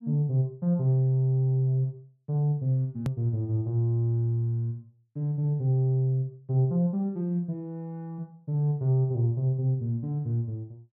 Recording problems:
edit click; at 3 s

